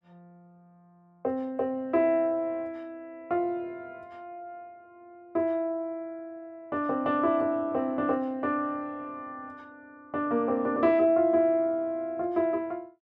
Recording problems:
none

